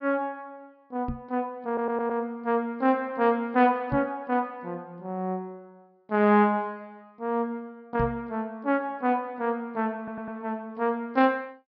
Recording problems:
treble missing; nothing above 5.5 kHz
knock on the microphone; at 1 s, at 4 s and at 8 s; peak 0 dB vs average level
stutter; at 1.5 s and at 10 s

